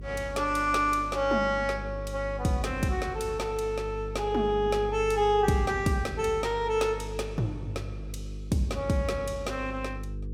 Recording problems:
hum; 50 Hz, harmonics up to 500 Hz, SNR 11 dB

